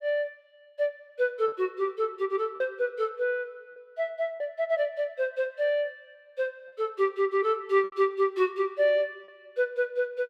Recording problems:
packet loss; 3% of the sound replaced, filled with repeated pitch periods

